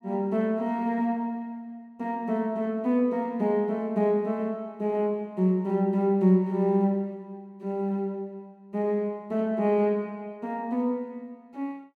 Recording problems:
none

